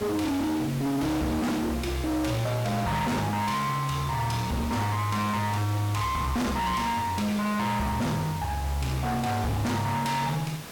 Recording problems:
distortion; hard clipping, uneven, signal-to-distortion ratio 5 dB
hiss; slope -3 dB per octave, SNR 12 dB

